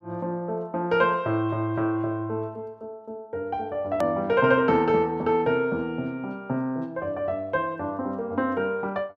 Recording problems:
hard cut with a click; at 4 s

